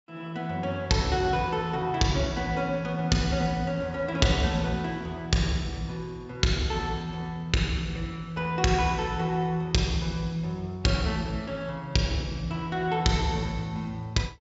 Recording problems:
treble missing; nothing above 7.5 kHz

